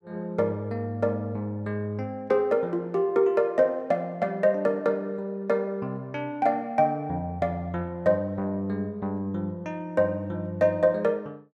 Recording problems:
none

